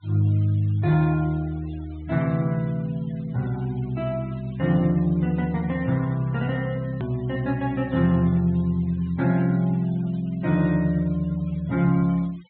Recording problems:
treble cut off; nothing above 4 kHz
noise reduction artefacts; signal-to-artefact ratio 26 dB
click at an edit; at 7 s

